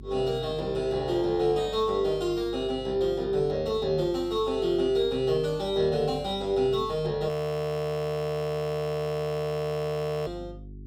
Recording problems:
hum; 50 Hz, harmonics up to 600 Hz, SNR 19 dB
frozen audio; at 7.5 s for 3 s

